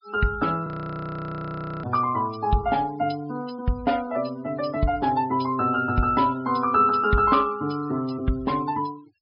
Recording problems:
low-pass filter; nothing above 5.5 kHz
noise reduction artefacts; signal-to-artefact ratio 22 dB
frozen audio; at 0.5 s for 1 s

